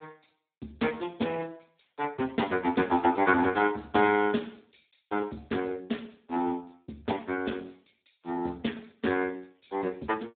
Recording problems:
telephone audio; 110 Hz to 3.6 kHz, Speex

